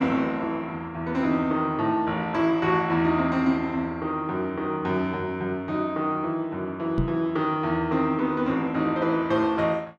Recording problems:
microphone bump; at 7 s; peak +3 dB vs average level

